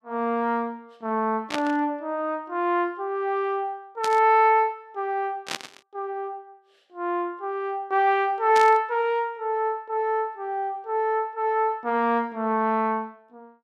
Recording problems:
burst of static; 4 times, first at 1.5 s; peak -1 dB vs average level

